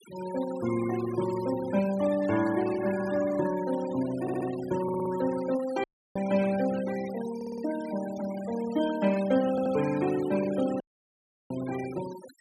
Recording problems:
denoising artefacts; signal-to-artefact ratio 14 dB
audio stuttering; 4 times, first at 4 s
audio cutting out; at 6 s and at 11 s for 0.5 s

